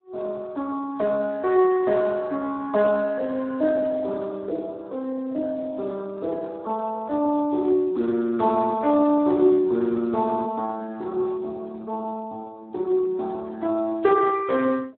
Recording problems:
phone line; 220 Hz to 2.8 kHz, Speex

